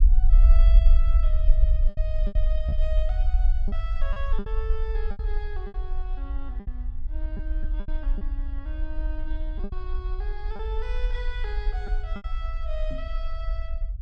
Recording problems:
low-frequency rumble; below 48 Hz, SNR -13 dB
lost packets; 7% of the sound replaced, filled with repeated pitch periods
knock on the microphone; at 13 s; peak +4 dB vs average level

